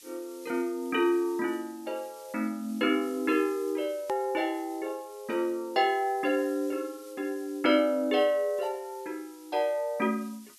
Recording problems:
background hiss; slope +4 dB per octave, SNR 23 dB
click at an edit; at 4 s

